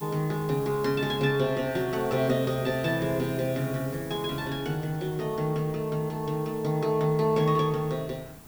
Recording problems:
background hiss; SNR 19 dB
wind on the microphone; below 520 Hz, SNR 21 dB

